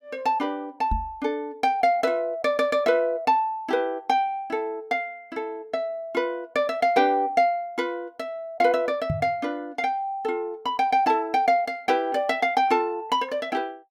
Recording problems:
microphone thump; at 1 s and at 9 s; peak +1 dB vs average level

